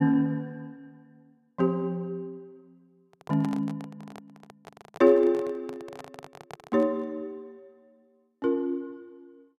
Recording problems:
handling noise; from 3 to 7 s; peak -8 dB vs average level

